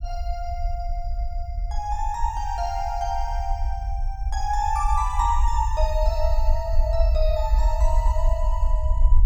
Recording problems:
low-frequency rumble; below 54 Hz, SNR -2 dB

